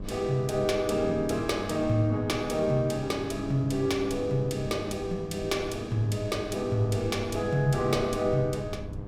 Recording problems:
hum; 50 Hz, harmonics up to 1.2 kHz, SNR 13 dB
low-frequency rumble; below 170 Hz, SNR 16 dB

